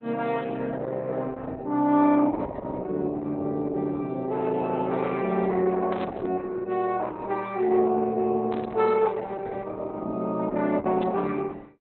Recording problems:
lossy compression; Opus, log-spectral distance 3 dB, nothing above 4 kHz
burst of static; at 6 s, at 8.5 s and at 11 s; peak -8 dB vs average level

